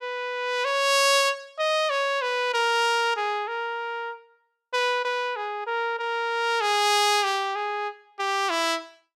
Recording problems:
none

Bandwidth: 16.5 kHz